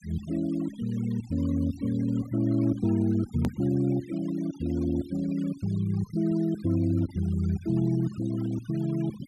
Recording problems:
denoising artefacts; signal-to-artefact ratio 21 dB
edit click; at 3.5 s

